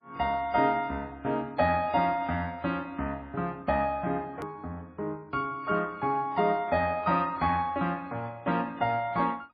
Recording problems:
lossy codec; MP3, log-spectral distance 2 dB
edit click; at 4.5 s

